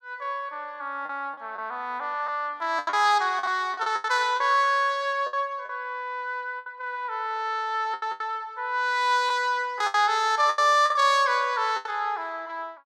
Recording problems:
lost packets; 8% of the sound replaced, filled with the last packet

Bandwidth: 16 kHz